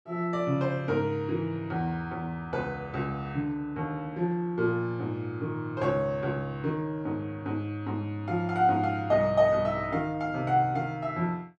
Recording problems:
none

